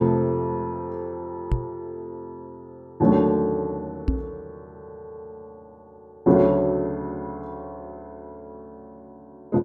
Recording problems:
knock on the microphone; at 1.5 s and at 4 s; peak +5 dB vs average level

